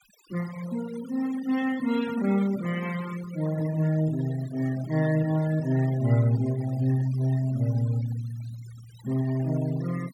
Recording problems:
denoising artefacts; signal-to-artefact ratio 17 dB

